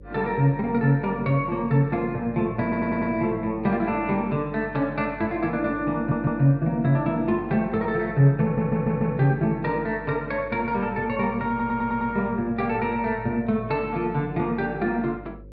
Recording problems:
hum; 50 Hz, harmonics up to 550 Hz, SNR 21 dB
stutter; 4 times, first at 2.5 s

